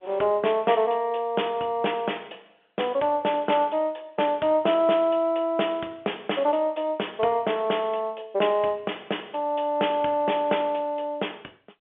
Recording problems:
phone line; 300 Hz to 3.4 kHz, G.711

